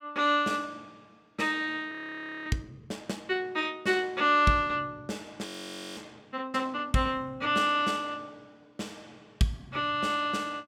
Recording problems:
frozen audio; at 2 s for 0.5 s and at 5.5 s for 0.5 s

